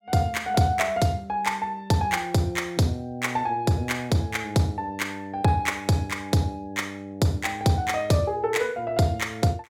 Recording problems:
none

